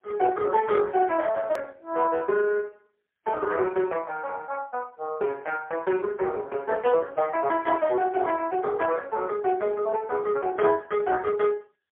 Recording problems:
phone line; 340 Hz to 3.4 kHz, AMR-NB, then MP3
hard cut with a click; at 1.5 s

